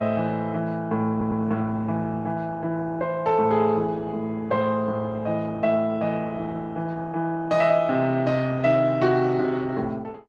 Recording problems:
lossy codec; Opus, log-spectral distance 2 dB
audio stuttering; at 1 s

